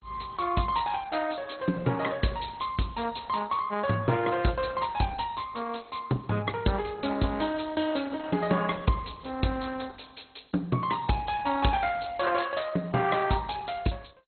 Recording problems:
lossy codec; Opus, then MP2, log-spectral distance 6 dB, nothing above 4.2 kHz

